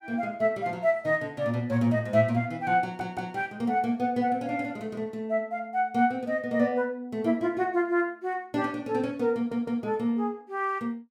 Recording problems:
stutter; at 3 s and at 9.5 s

